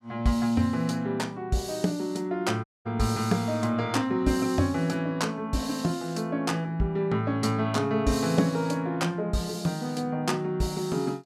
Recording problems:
dropout; at 2.5 s

